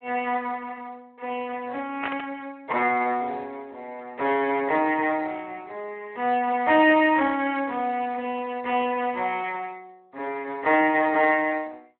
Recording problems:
phone line; 280 Hz to 3.1 kHz, Speex
static burst; at 2 s; peak -1 dB vs average level

